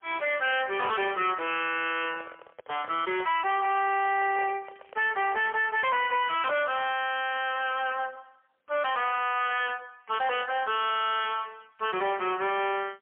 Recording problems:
phone line; 340 Hz to 3.3 kHz, AMR-NB, then MP3
distortion; hard clipping, signal-to-distortion ratio 6 dB
microphone handling noise; from 2 to 5.5 s; peak -9 dB vs average level
crackle; from 4 to 7.5 s and at 9 s; loose cable, SNR 29 dB

